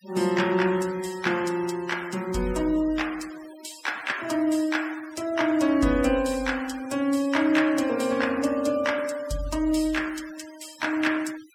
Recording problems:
noise reduction artefacts; signal-to-artefact ratio 18 dB

